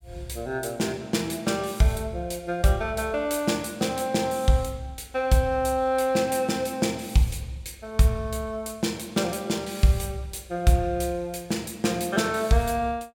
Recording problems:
none

